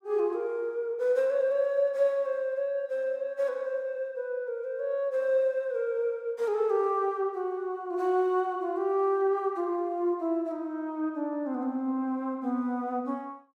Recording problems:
none

